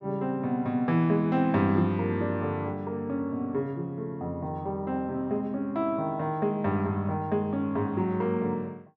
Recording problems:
none

